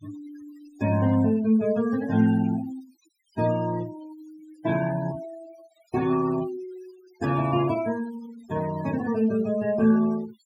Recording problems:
denoising artefacts; signal-to-artefact ratio 17 dB

